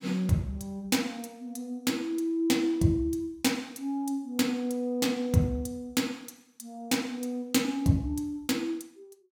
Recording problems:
none

